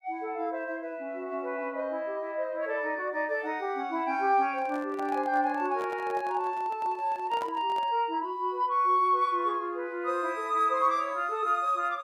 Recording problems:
handling noise; from 4.5 to 8 s; peak -8 dB vs average level

